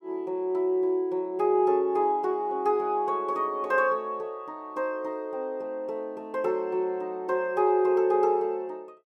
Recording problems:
none

